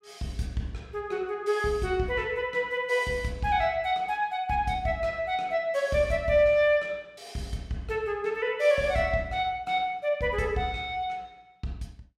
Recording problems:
none

